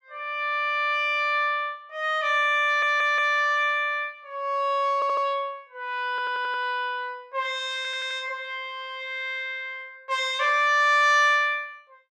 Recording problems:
audio stuttering; 4 times, first at 2.5 s

